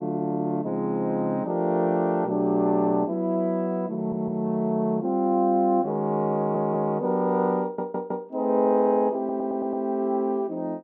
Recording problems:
stutter; 4 times, first at 4 s

